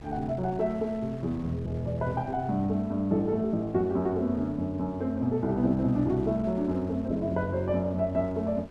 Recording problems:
wind noise; below 400 Hz, SNR 19 dB

